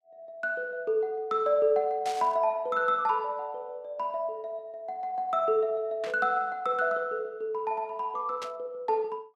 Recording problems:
static burst; at 2 s, at 6 s and at 8.5 s; peak -7 dB vs average level

